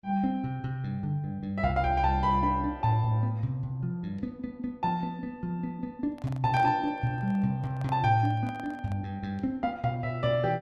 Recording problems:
handling noise; from 6 to 9 s; peak -7 dB vs average level

